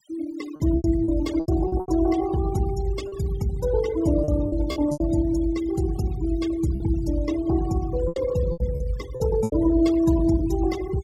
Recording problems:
noise reduction artefacts; signal-to-artefact ratio 18 dB
lost packets; 9% of the sound replaced, filled with repeated pitch periods

